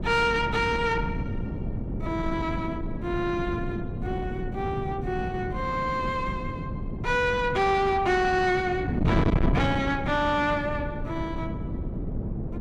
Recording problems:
distortion; soft clipping, signal-to-distortion ratio 6 dB
wind on the microphone; below 270 Hz, SNR 4 dB

